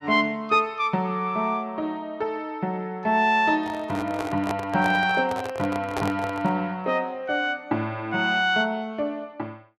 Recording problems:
microphone handling noise; from 3.5 to 6.5 s; peak 0 dB vs average level

